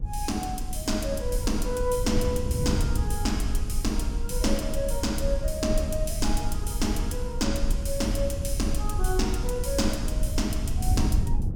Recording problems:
low-frequency rumble; below 54 Hz, SNR 3 dB
wind noise; below 130 Hz, SNR 5 dB

